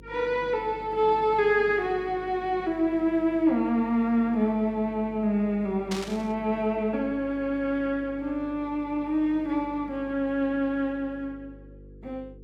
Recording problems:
hum; 50 Hz, harmonics up to 500 Hz, SNR 22 dB
burst of static; at 6 s; peak -4 dB vs average level

